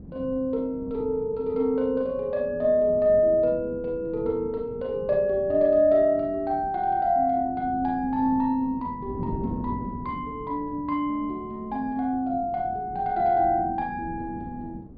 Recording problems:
treble missing; nothing above 4.8 kHz
wind noise; below 270 Hz, SNR 15 dB

